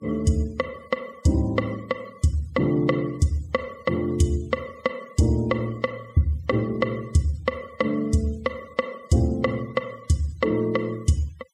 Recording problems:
denoising artefacts; signal-to-artefact ratio 25 dB

